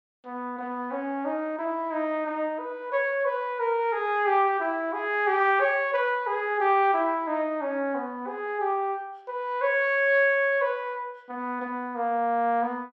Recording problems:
none

